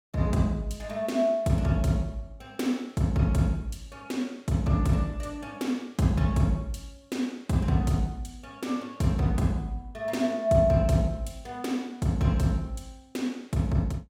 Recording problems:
none

